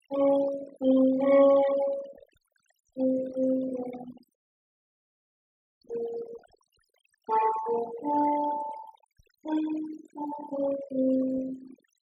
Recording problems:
denoising artefacts; signal-to-artefact ratio 13 dB
audio cutting out; at 4.5 s for 1.5 s

